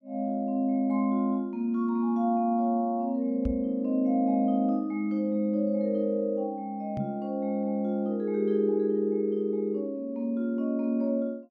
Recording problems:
microphone thump; at 3.5 s and at 7 s; peak -2 dB vs average level

